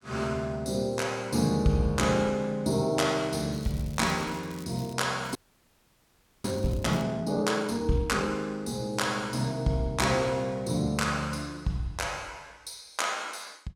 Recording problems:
crackle; from 3.5 to 5 s and from 5 to 7 s; loose cable, SNR 22 dB
audio freezing; at 5.5 s for 1 s

